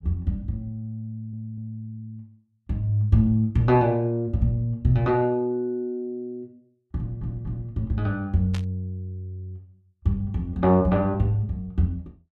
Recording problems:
stutter; at 1 s and at 7 s
burst of static; at 8.5 s; peak -9 dB vs average level

